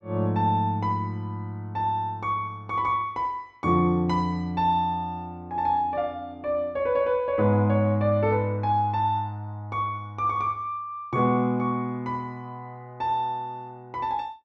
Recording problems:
none

